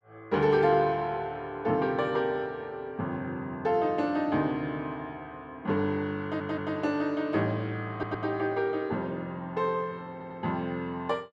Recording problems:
stutter; at 6 s, at 8 s and at 10 s

